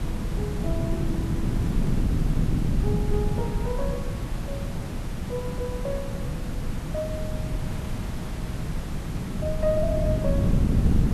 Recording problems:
hiss; slope -5 dB per octave, SNR 7 dB
wind noise; below 180 Hz, SNR -5 dB

